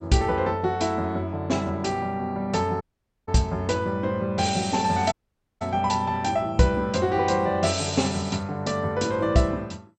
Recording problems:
lossy codec; MP2, log-spectral distance 3 dB, nothing above 8.2 kHz
dropout; at 3 s and at 5 s

